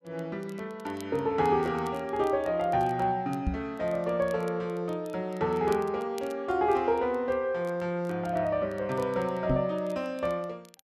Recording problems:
crackle; vinyl, SNR 27 dB
microphone thump; at 3.5 s and at 9.5 s; peak +4 dB vs average level

